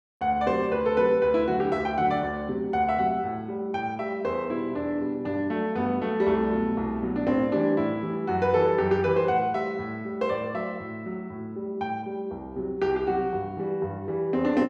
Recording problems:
none

